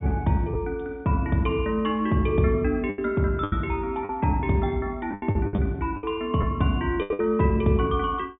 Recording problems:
treble cut off; nothing above 3.7 kHz
packet loss; 8% of the sound replaced, filled with the last packet

